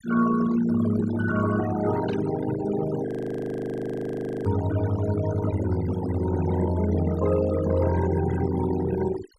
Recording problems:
noise reduction artefacts; signal-to-artefact ratio 11 dB
burst of static; at 2 s; peak -12 dB vs average level
audio freezing; at 3 s for 1.5 s

